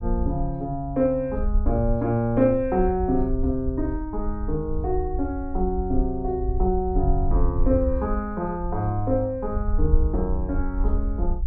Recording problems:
rumble; below 64 Hz, SNR 4 dB

